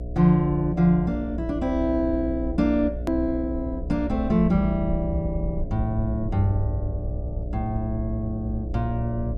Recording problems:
electrical hum; 60 Hz, harmonics up to 720 Hz, SNR 8 dB
rumble; below 84 Hz, SNR 11 dB
click at an edit; at 3 s

